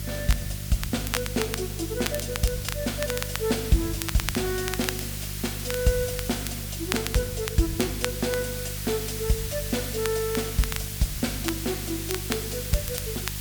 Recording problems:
hum; 50 Hz, harmonics up to 400 Hz, SNR 7 dB
background hiss; slope +4 dB per octave, SNR 5 dB
crackling; vinyl, SNR 6 dB

